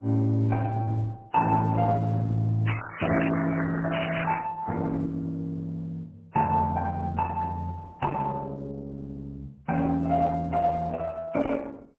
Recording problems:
codec artefacts; MP3, then Opus, log-spectral distance 5 dB
crackling; from 2.5 to 4.5 s; loose cable, SNR 6 dB

